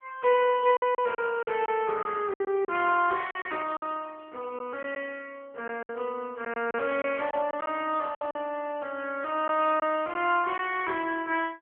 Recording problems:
phone line; 300 Hz to 3.3 kHz, AMR-NB
packet loss; 7% of the sound replaced, filled with silence

